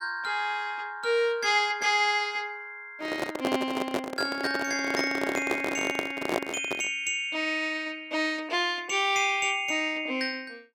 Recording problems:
microphone handling noise; from 3 to 7 s; peak +4 dB vs average level

